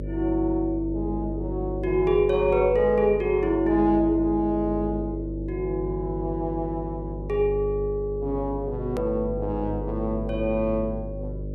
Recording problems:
hum; 50 Hz, harmonics up to 600 Hz, SNR 8 dB
hard cut with a click; at 9 s

